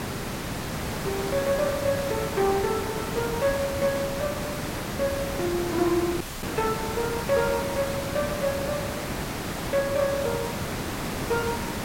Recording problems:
hiss; slope -5 dB per octave, SNR 3 dB
audio cutting out; at 6 s

